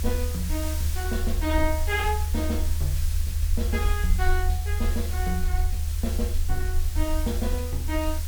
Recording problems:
hiss; slope +1 dB per octave, SNR 7 dB
low-frequency rumble; below 76 Hz, SNR -4 dB

